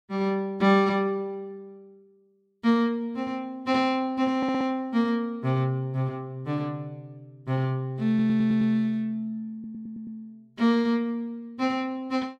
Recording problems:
audio stuttering; at 4.5 s, at 8 s and at 9.5 s

